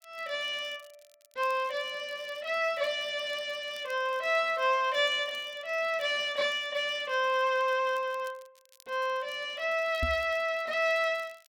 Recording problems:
crackling; vinyl, SNR 28 dB
microphone bump; at 10 s; peak 0 dB vs average level

